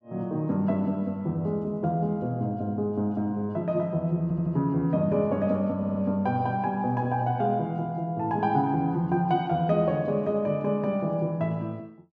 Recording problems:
stutter; at 4 s and at 6 s

